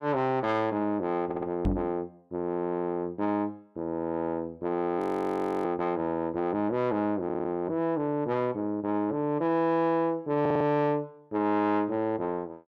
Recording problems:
distorted audio; soft clipping, signal-to-distortion ratio 11 dB
stutter; at 1.5 s, at 7 s and at 10 s
knock on the microphone; at 1.5 s; peak +5 dB vs average level
frozen audio; at 5 s for 0.5 s

